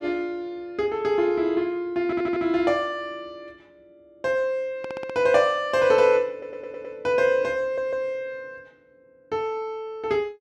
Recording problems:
stutter; 4 times, first at 2 s

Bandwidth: 12.5 kHz